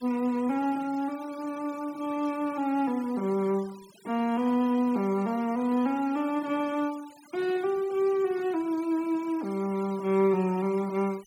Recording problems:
noise reduction artefacts; signal-to-artefact ratio 23 dB

